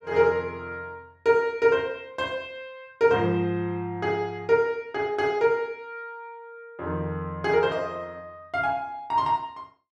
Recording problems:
none

